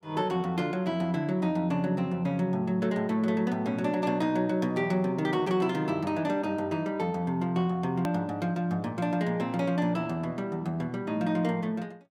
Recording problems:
edit click; at 8 s

